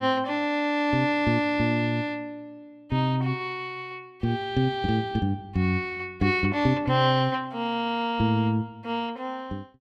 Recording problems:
none

